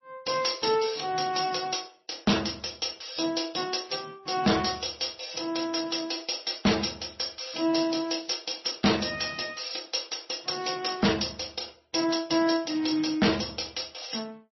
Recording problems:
lossy codec; MP3, then MP3, log-spectral distance 13 dB, nothing above 5.7 kHz
distortion; hard clipping, signal-to-distortion ratio 7 dB

